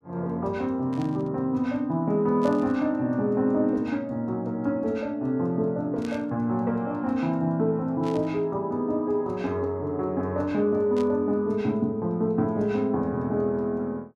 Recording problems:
static burst; 5 times, first at 1 s; peak -13 dB vs average level

